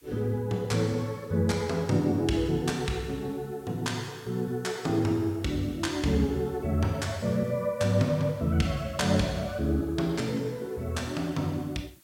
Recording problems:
hiss; slope +1 dB per octave, SNR 28 dB

